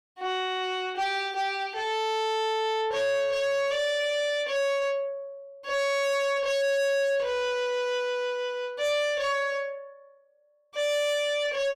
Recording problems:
distortion; soft clipping, signal-to-distortion ratio 10 dB

